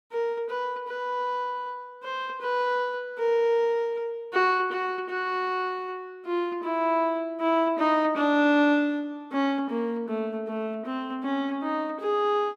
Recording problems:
none

